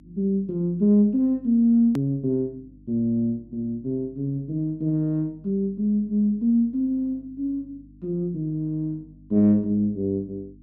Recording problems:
hum; 50 Hz, harmonics up to 300 Hz, SNR 26 dB
edit click; at 2 s

